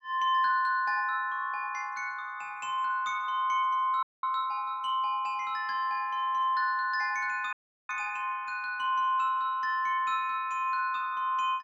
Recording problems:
frozen audio; at 4 s and at 7.5 s

